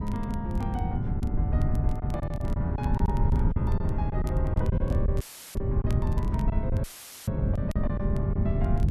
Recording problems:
wind noise; below 130 Hz, SNR -7 dB
crackle; vinyl, SNR 20 dB
lost packets; 7% of the sound replaced, filled with silence
audio cutting out; at 5 s and at 7 s; filled with static

